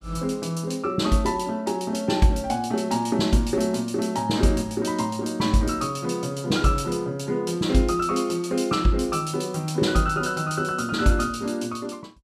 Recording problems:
none

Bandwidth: 14.5 kHz